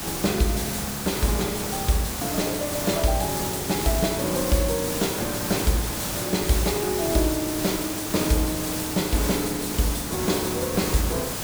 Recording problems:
background hiss; slope -3 dB per octave, SNR 3 dB

